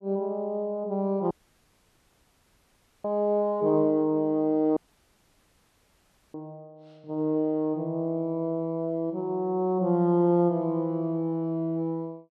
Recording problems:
audio cutting out; at 1.5 s for 1.5 s and at 5 s for 1.5 s

